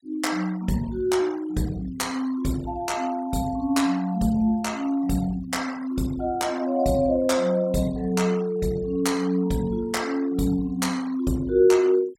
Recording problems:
noise reduction artefacts; signal-to-artefact ratio 20 dB

